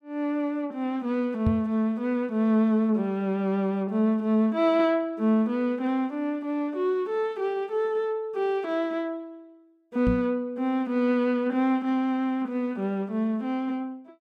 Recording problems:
microphone thump; at 1.5 s and at 10 s; peak +4 dB vs average level

